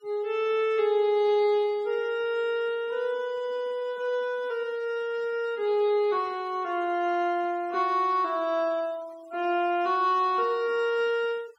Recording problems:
denoising artefacts; signal-to-artefact ratio 27 dB

